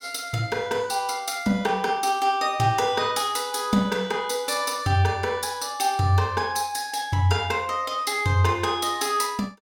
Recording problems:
none

